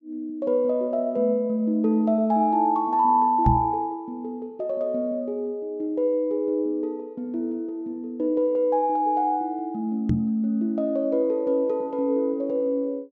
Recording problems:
treble cut off; nothing above 7.9 kHz
microphone thump; at 3.5 s and at 10 s; peak +6 dB vs average level

